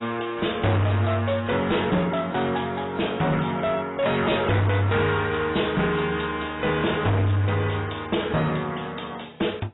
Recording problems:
codec artefacts; AAC, log-spectral distance 9 dB, nothing above 3.8 kHz
distortion; hard clipping, signal-to-distortion ratio 7 dB

